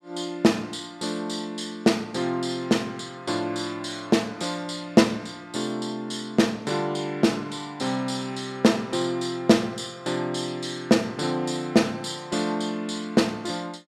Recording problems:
none

